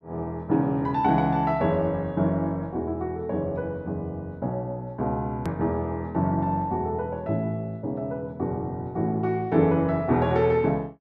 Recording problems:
hard cut with a click; at 5.5 s

